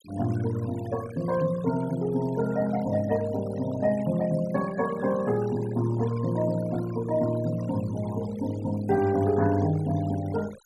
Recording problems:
denoising artefacts; signal-to-artefact ratio 17 dB

